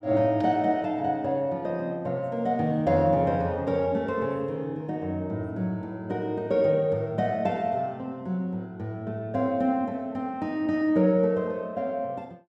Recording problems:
none

